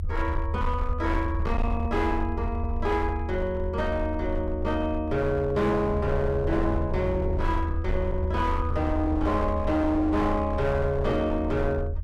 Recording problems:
distorted audio; hard clipping, signal-to-distortion ratio 12 dB
low-frequency rumble; below 80 Hz, SNR 4 dB

